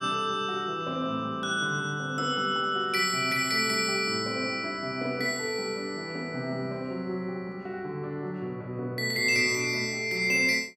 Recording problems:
none

